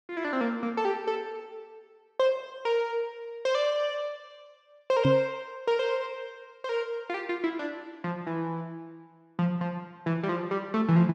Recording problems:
microphone bump; at 5 s; peak +8 dB vs average level

